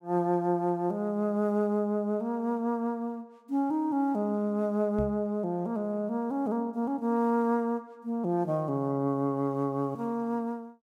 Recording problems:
microphone bump; at 5 s; peak -1 dB vs average level

